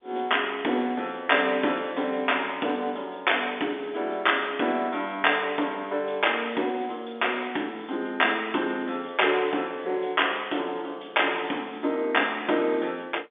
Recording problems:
phone line; 220 Hz to 3.5 kHz, G.711

